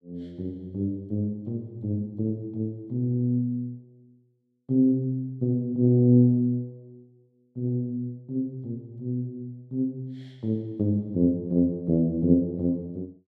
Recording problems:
none

